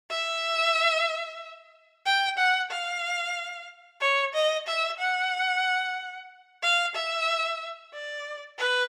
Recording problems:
none

